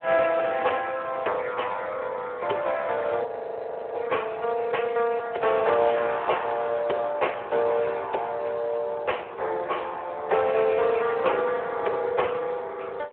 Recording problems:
phone line; 370 Hz to 3.2 kHz, Speex
frozen audio; at 3.5 s for 0.5 s

